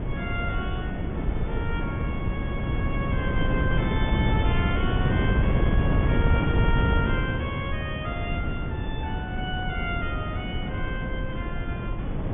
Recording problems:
low-pass filter; nothing above 3.6 kHz
wind noise; below 210 Hz, SNR -6 dB

